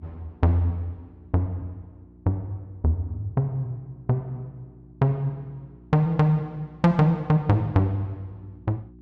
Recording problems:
hum; 60 Hz, harmonics up to 360 Hz, SNR 25 dB

